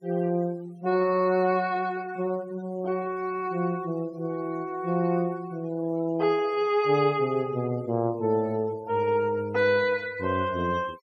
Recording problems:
noise reduction artefacts; signal-to-artefact ratio 24 dB

